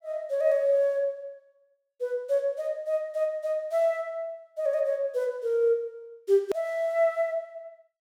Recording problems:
edit click; at 6.5 s

